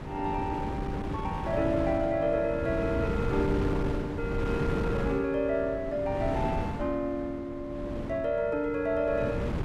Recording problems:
wind on the microphone; below 370 Hz, SNR 4 dB

